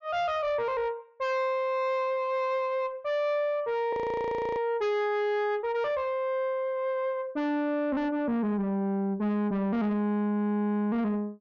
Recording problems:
treble cut off; nothing above 6.9 kHz
distorted audio; soft clipping, signal-to-distortion ratio 10 dB
audio freezing; at 4 s for 0.5 s

